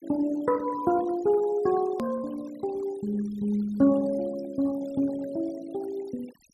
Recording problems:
noise reduction artefacts; signal-to-artefact ratio 21 dB
edit click; at 2 s

